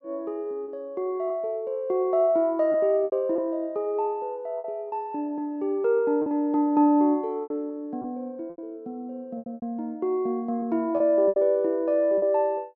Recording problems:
lost packets; 7% of the sound replaced, filled with repeated pitch periods

